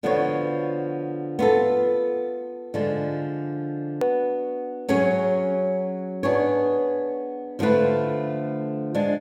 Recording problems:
hard cut with a click; at 4 s

